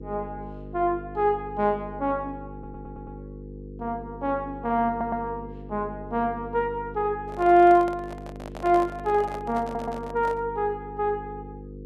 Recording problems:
hum; 50 Hz, harmonics up to 500 Hz, SNR 15 dB
stutter; at 2.5 s, at 5 s and at 9.5 s
handling noise; from 7.5 to 10 s; peak -7 dB vs average level

